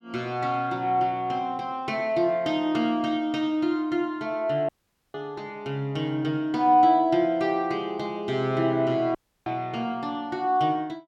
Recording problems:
dropout; at 4.5 s and at 9 s

